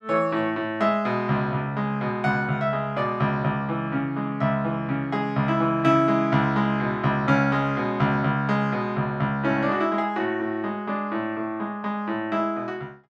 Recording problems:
none

